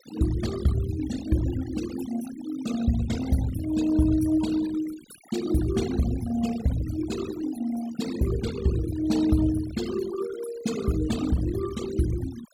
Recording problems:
noise reduction artefacts; signal-to-artefact ratio 13 dB

